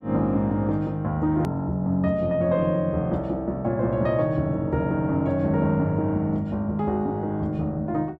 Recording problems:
hard cut with a click; at 1.5 s

